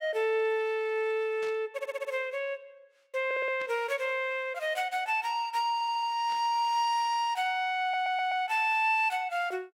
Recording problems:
static burst; at 1.5 s, at 3.5 s and at 6.5 s; peak -13 dB vs average level
audio stuttering; 4 times, first at 1.5 s

